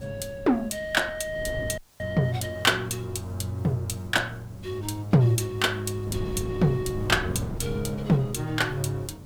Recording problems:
background hiss; slope -1 dB per octave, SNR 30 dB
wind on the microphone; below 240 Hz, SNR 13 dB
audio cutting out; at 2 s

